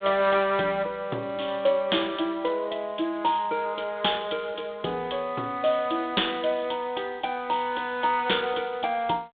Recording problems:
telephone audio; 220 Hz to 3.6 kHz, G.726

